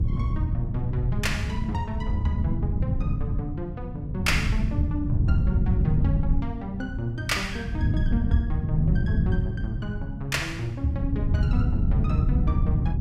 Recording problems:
wind on the microphone; below 140 Hz, SNR -3 dB

